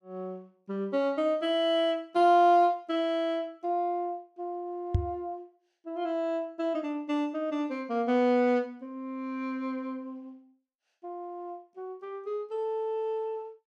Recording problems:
microphone thump; at 5 s; peak +7 dB vs average level

